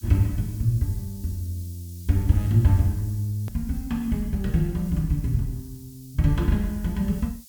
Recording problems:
background hiss; SNR 21 dB
click at an edit; at 3.5 s

